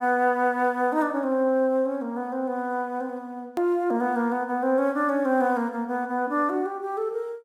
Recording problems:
edit click; at 3.5 s

